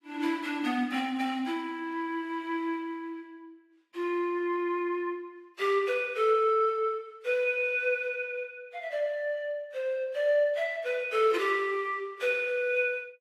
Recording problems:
lossy compression; AAC, log-spectral distance 2 dB, nothing above 13.1 kHz

